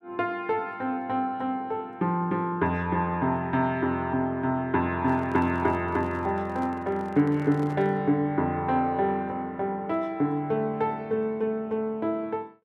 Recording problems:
handling noise; from 5 to 8 s; peak -11 dB vs average level

